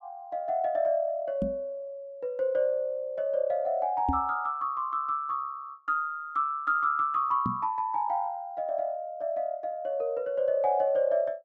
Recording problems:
knock on the microphone; at 1.5 s, at 4 s and at 7.5 s; peak +3 dB vs average level

